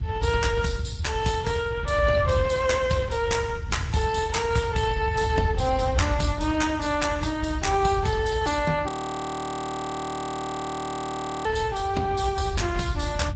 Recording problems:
lossy compression; MP3, then Speex, log-spectral distance 2 dB, nothing above 7.8 kHz
rumble; below 110 Hz, SNR 6 dB
frozen audio; at 9 s for 2.5 s

